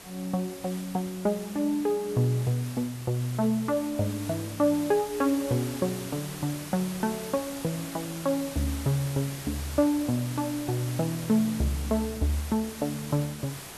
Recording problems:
background hiss; slope -2 dB per octave, SNR 12 dB

